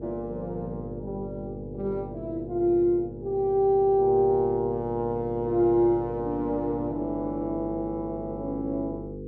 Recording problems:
hum; 50 Hz, harmonics up to 500 Hz, SNR 12 dB

